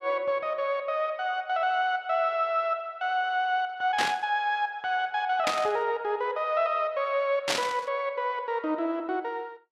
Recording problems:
burst of static; at 4 s, at 5.5 s and at 7.5 s; peak +5 dB vs average level

